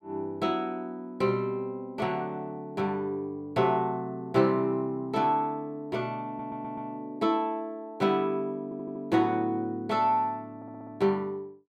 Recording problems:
stutter; at 6.5 s, at 8.5 s and at 11 s

